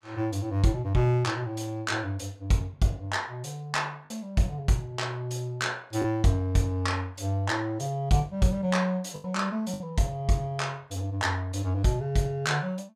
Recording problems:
lost packets; 1.6% of the sound replaced, filled with the last packet

